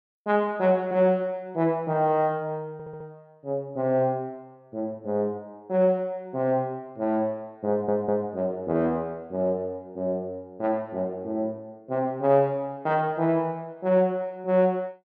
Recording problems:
audio stuttering; at 2.5 s and at 7.5 s

